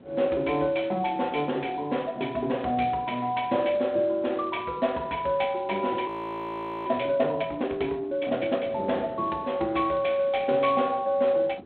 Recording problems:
telephone audio; 260 Hz to 3.8 kHz, G.726
wind noise; below 510 Hz, SNR 21 dB
frozen audio; at 6 s for 1 s

